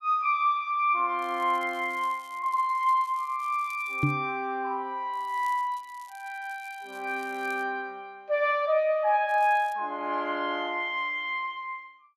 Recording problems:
crackling; from 1 to 4 s, from 5 to 7.5 s and at 9.5 s; loose cable, SNR 27 dB
knock on the microphone; at 4 s; peak +5 dB vs average level

